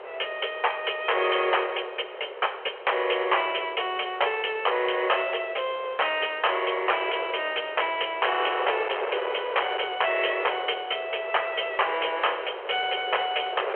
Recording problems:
telephone audio; 340 Hz to 3.3 kHz, G.726
distortion; hard clipping, signal-to-distortion ratio 10 dB
wind on the microphone; below 1.4 kHz, SNR 10 dB

